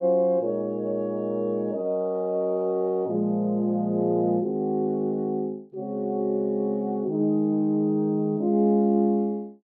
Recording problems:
none

